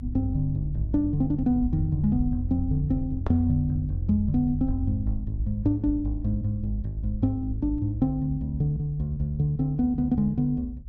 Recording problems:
rumble; below 66 Hz, SNR 11 dB

